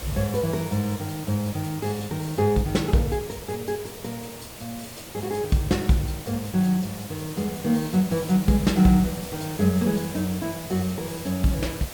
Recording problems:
background hiss; SNR 13 dB

